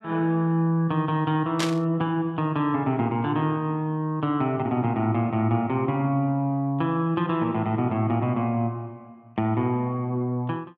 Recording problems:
static burst; at 1.5 s; peak +1 dB vs average level

